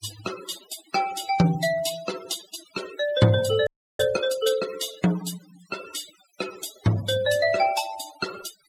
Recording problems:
denoising artefacts; signal-to-artefact ratio 13 dB
frozen audio; at 3.5 s

